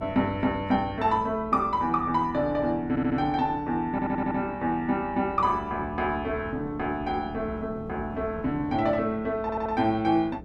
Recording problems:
electrical hum; 60 Hz, harmonics up to 480 Hz, SNR 20 dB
wind on the microphone; below 330 Hz, SNR 17 dB
stutter; at 3 s, at 4 s and at 9.5 s

